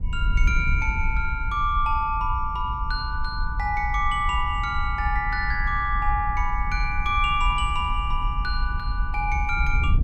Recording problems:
wind on the microphone; below 64 Hz, SNR 3 dB

